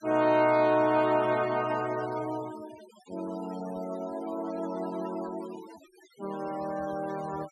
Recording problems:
noise reduction artefacts; signal-to-artefact ratio 19 dB

